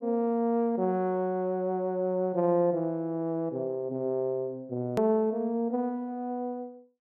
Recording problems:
hard cut with a click; at 5 s

